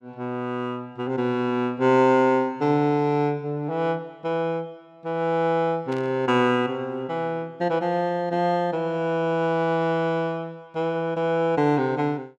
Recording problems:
static burst; at 6 s; peak -14 dB vs average level

